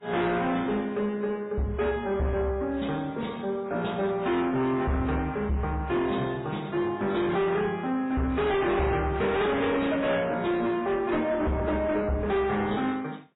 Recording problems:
lossy compression; MP3, then AAC, log-spectral distance 3 dB, nothing above 3.8 kHz
distorted audio; soft clipping, signal-to-distortion ratio 7 dB

